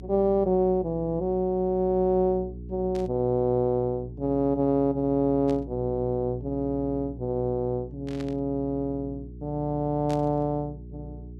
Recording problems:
electrical hum; 60 Hz, harmonics up to 420 Hz, SNR 15 dB
static burst; 4 times, first at 3 s; peak -13 dB vs average level

